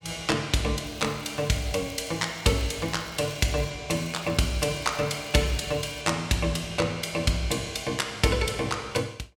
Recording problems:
crackling; from 1 to 3.5 s and from 4 to 6 s; loose cable, SNR 22 dB

